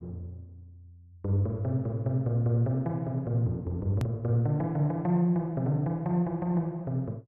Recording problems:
hard cut with a click; at 4 s

